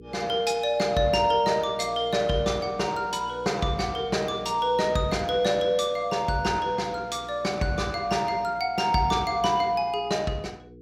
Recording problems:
mains hum; 60 Hz, harmonics up to 480 Hz, SNR 22 dB

